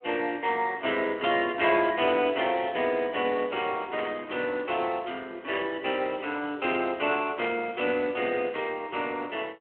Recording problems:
telephone audio; 300 Hz to 3.3 kHz, Speex
burst of static; at 4 s, at 5.5 s and at 7.5 s; peak -4 dB vs average level

